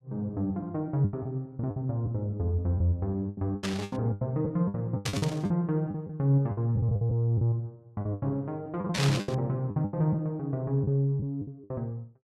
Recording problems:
lost packets; 13% of the sound replaced, filled with the last packet
burst of static; at 3.5 s, at 5 s and at 9 s; peak +3 dB vs average level

